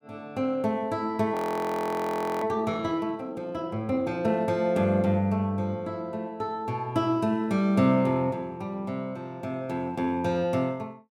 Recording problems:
frozen audio; at 1.5 s for 1 s

